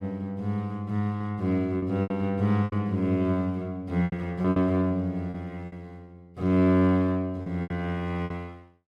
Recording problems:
lost packets; 8% of the sound replaced, filled with repeated pitch periods

